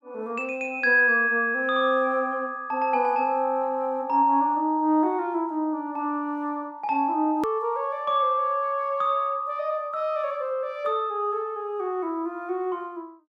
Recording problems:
hard cut with a click; at 7.5 s

